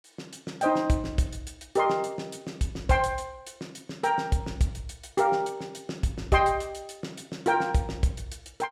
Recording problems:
none

